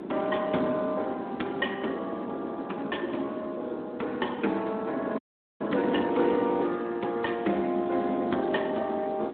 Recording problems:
phone line; 220 Hz to 3.6 kHz, Speex
wind on the microphone; below 460 Hz, SNR 7 dB
audio cutting out; at 5 s

